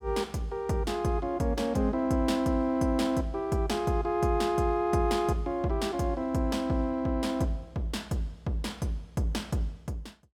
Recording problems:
none

